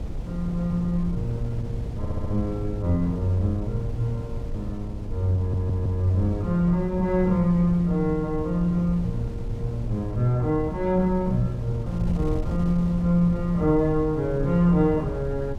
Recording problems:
wind noise; below 120 Hz, SNR 9 dB
stutter; at 2 s and at 5.5 s

